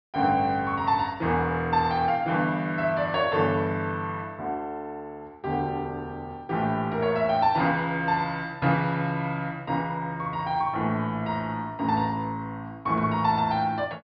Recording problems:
low-pass filter; nothing above 5.5 kHz

